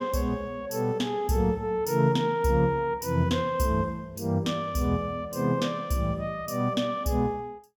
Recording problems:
none

